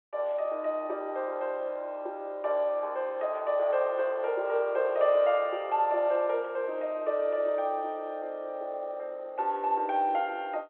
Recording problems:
phone line; 320 Hz to 3.6 kHz, G.711

